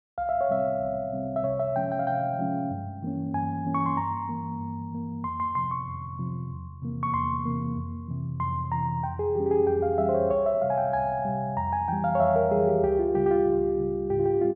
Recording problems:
none

